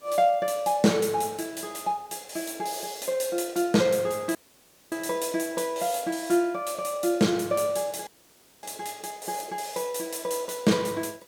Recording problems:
background hiss; slope -3 dB per octave, SNR 28 dB
dropout; at 4.5 s for 0.5 s and at 8 s for 0.5 s

